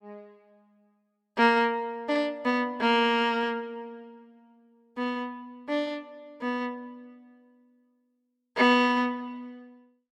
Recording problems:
none

